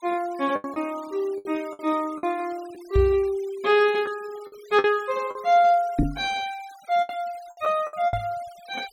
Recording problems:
denoising artefacts; signal-to-artefact ratio 23 dB
lost packets; 8% of the sound replaced, filled with the last packet
microphone bump; at 3 s, at 6 s and at 8 s; peak +6 dB vs average level

